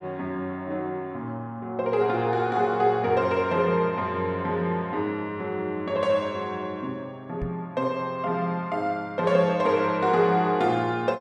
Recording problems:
microphone bump; at 7.5 s; peak -3 dB vs average level

